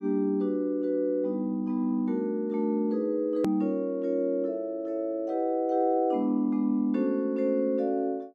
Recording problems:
click at an edit; at 3.5 s

